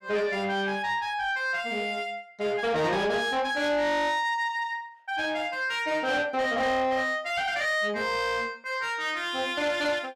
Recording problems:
distortion; soft clipping, signal-to-distortion ratio 11 dB

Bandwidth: 15 kHz